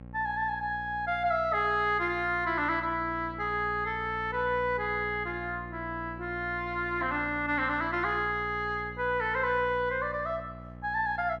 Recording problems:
hum; 60 Hz, harmonics up to 1.1 kHz, SNR 15 dB

